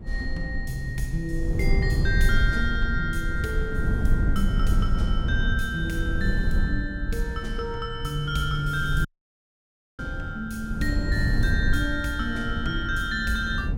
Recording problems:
low-frequency rumble; below 64 Hz, SNR 7 dB
wind noise; below 100 Hz, SNR 0 dB
audio cutting out; at 9 s for 1 s

